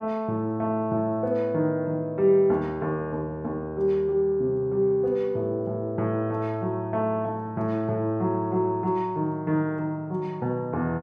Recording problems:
none

